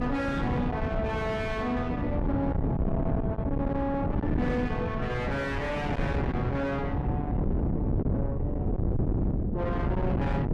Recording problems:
distortion; soft clipping, signal-to-distortion ratio 6 dB
hum; 60 Hz, harmonics up to 420 Hz, SNR 20 dB
wind noise; below 280 Hz, SNR -1 dB

